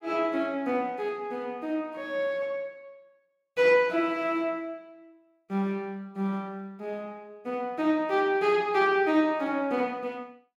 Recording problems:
none

